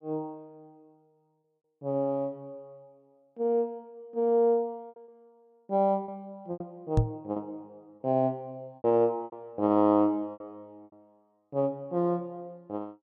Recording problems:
lost packets; 5% of the sound replaced, filled with repeated pitch periods
knock on the microphone; at 7 s; peak +8 dB vs average level

